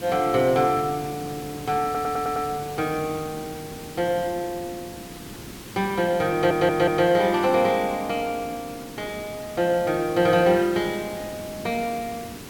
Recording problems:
background hiss; SNR 14 dB
audio stuttering; at 2 s and at 6.5 s

